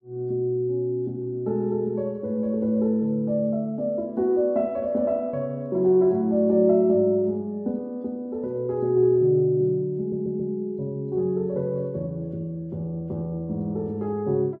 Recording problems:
stutter; at 10 s

